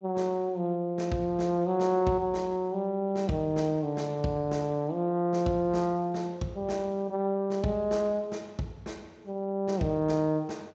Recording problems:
lossy compression; Speex, log-spectral distance 2 dB, nothing above 7.3 kHz

